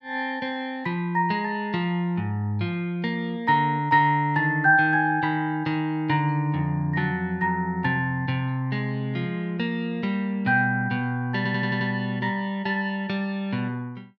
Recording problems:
stutter; at 11 s

